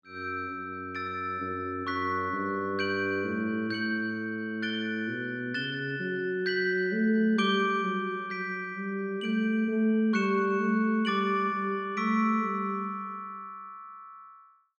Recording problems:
none

